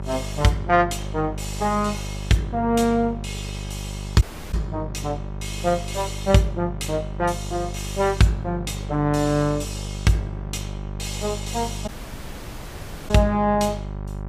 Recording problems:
hum; 50 Hz, harmonics up to 1.2 kHz, SNR 9 dB
audio cutting out; at 4 s and at 12 s for 1 s

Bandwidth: 15 kHz